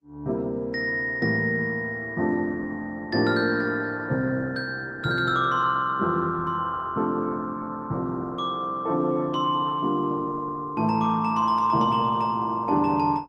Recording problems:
codec artefacts; Opus, log-spectral distance 2 dB, nothing above 13.7 kHz

